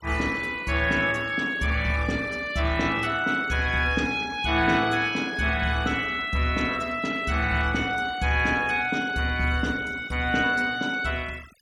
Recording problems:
denoising artefacts; signal-to-artefact ratio 20 dB

